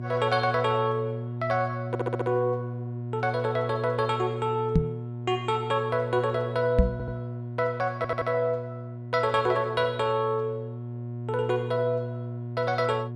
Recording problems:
mains hum; 60 Hz, harmonics up to 720 Hz, SNR 7 dB
audio stuttering; at 2 s, at 7 s and at 8 s
microphone bump; at 5 s and at 7 s; peak +9 dB vs average level

